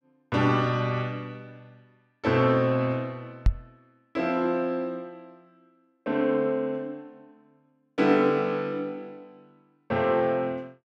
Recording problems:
microphone bump; at 3.5 s; peak +7 dB vs average level

